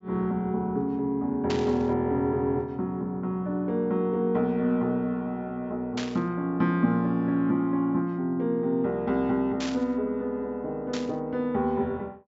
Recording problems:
low-pass filter; nothing above 8 kHz
burst of static; 4 times, first at 1.5 s; peak -3 dB vs average level

